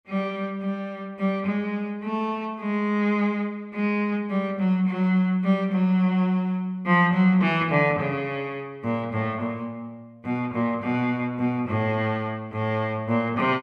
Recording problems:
none

